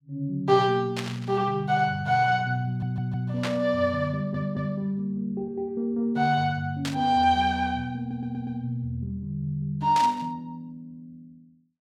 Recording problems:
static burst; 4 times, first at 1 s; peak -1 dB vs average level
audio stuttering; at 2.5 s, at 4 s and at 8 s

